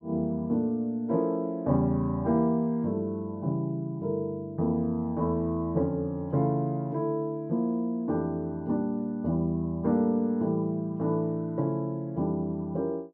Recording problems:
none

